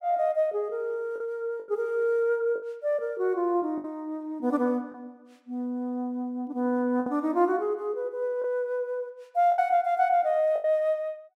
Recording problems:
lost packets; 5% of the sound replaced, filled with the last packet

